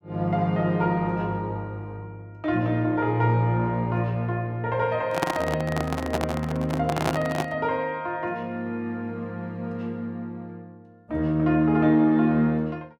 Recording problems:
handling noise; from 5 to 7.5 s; peak +4 dB vs average level

